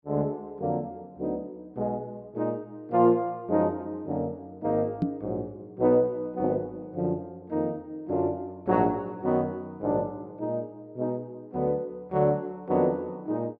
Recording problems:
microphone bump; at 5 s; peak +6 dB vs average level

